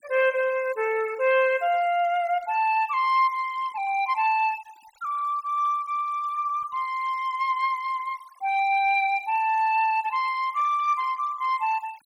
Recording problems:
denoising artefacts; signal-to-artefact ratio 23 dB

